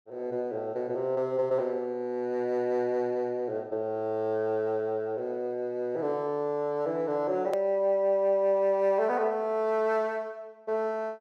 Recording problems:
click at an edit; at 7.5 s

